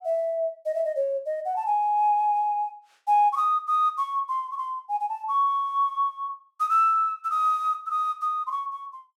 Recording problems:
none

